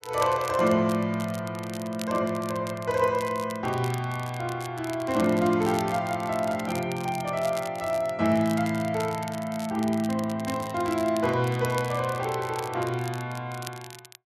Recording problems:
crackling; vinyl, SNR 16 dB

